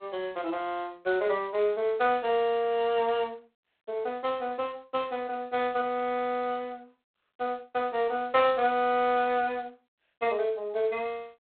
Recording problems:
phone line; 280 Hz to 3.9 kHz, G.726

